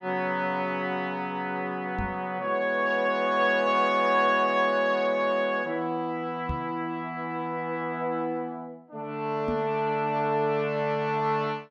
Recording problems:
microphone bump; at 2 s, at 6.5 s and at 9.5 s; peak -2 dB vs average level

